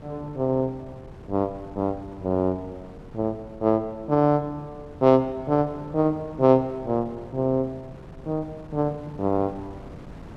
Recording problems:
wind noise; below 390 Hz, SNR 19 dB

